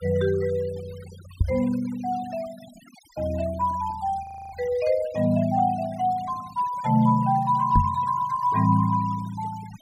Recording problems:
noise reduction artefacts; signal-to-artefact ratio 21 dB
microphone bump; at 1.5 s and at 8 s; peak +6 dB vs average level
audio freezing; at 4 s

